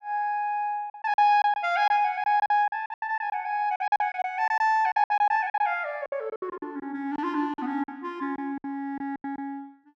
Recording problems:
packet loss; 14% of the sound replaced, filled with silence

